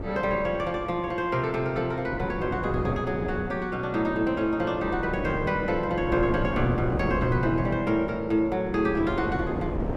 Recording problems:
wind noise; below 440 Hz, SNR 7 dB

